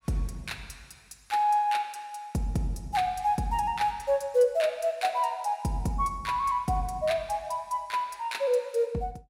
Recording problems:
none

